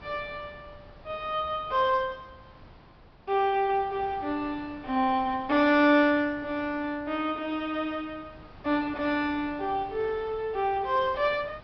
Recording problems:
low-pass filter; nothing above 5.5 kHz
wind noise; below 910 Hz, SNR 23 dB

